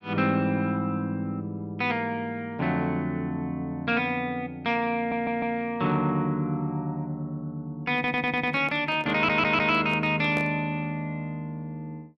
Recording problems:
stutter; at 5 s, at 8 s and at 9 s
microphone handling noise; from 8 to 10 s; peak -5 dB vs average level

